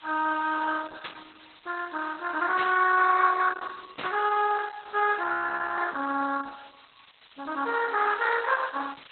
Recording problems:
codec artefacts; MP2, then Opus, log-spectral distance 17 dB, nothing above 3.9 kHz
hiss; SNR 27 dB
burst of static; at 1 s, at 2.5 s and at 4 s; peak -7 dB vs average level
audio freezing; at 5 s for 0.5 s

